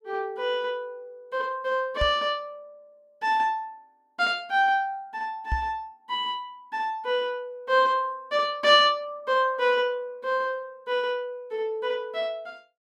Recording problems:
knock on the microphone; at 2 s and at 5.5 s; peak +1 dB vs average level

